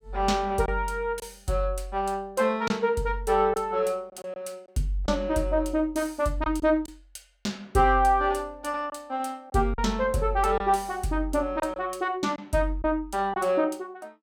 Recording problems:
packet loss; 3% of the sound replaced, filled with silence

